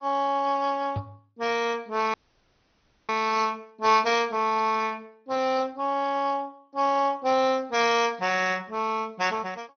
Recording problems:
low-pass filter; nothing above 6.2 kHz
lossy codec; Speex, log-spectral distance 4 dB
knock on the microphone; at 1 s; peak -7 dB vs average level
dropout; at 2 s for 1 s

